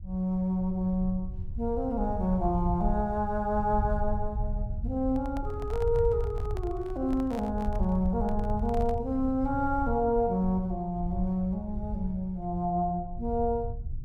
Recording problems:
low-frequency rumble; below 82 Hz, SNR 7 dB
microphone handling noise; from 5 to 9 s; peak -8 dB vs average level

